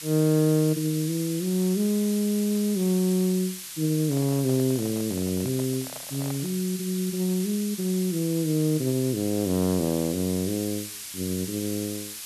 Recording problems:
hiss; slope +4 dB per octave, SNR 9 dB
microphone handling noise; from 4 to 6.5 s; peak -10 dB vs average level

